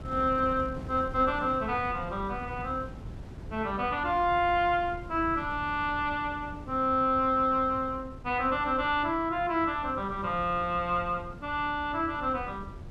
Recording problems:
wind on the microphone; below 200 Hz, SNR 15 dB

